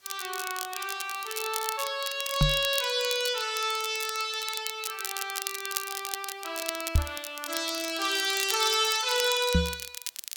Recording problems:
hiss; slope +1 dB per octave, SNR 28 dB
crackling; vinyl, SNR 7 dB
microphone bump; at 2.5 s, at 7 s and at 9.5 s; peak +8 dB vs average level

